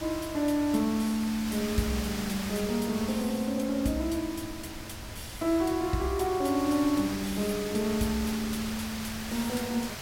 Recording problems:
background hiss; slope -1 dB per octave, SNR 9 dB
wind noise; below 190 Hz, SNR 19 dB

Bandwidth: 16.5 kHz